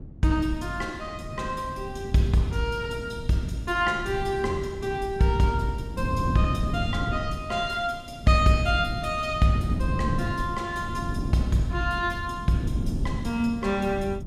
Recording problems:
wind noise; below 210 Hz, SNR 7 dB

